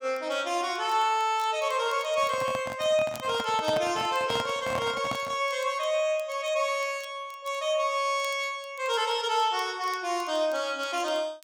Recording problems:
crackle; vinyl, SNR 26 dB
microphone handling noise; from 2 to 5.5 s; peak -2 dB vs average level

